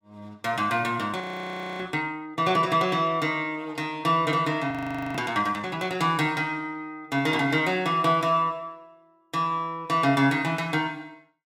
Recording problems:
audio freezing; at 1 s for 0.5 s and at 4.5 s

